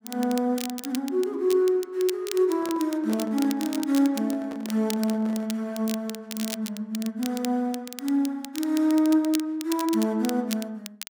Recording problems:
crackling; vinyl, SNR 13 dB
handling noise; from 2.5 to 5.5 s; peak -11 dB vs average level

